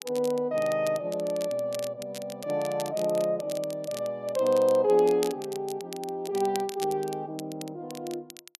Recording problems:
crackling; vinyl, SNR 16 dB

